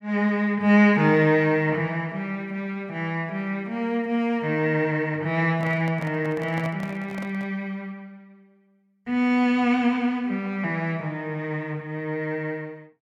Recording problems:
handling noise; from 5.5 to 7.5 s; peak -9 dB vs average level

